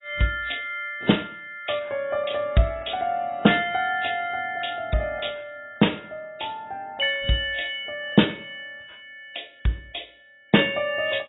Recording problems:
codec artefacts; AAC, log-spectral distance 5 dB, nothing above 3.6 kHz

